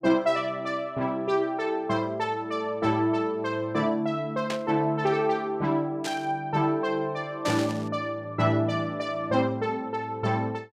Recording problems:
static burst; at 4.5 s, at 6 s and at 7.5 s; peak -2 dB vs average level

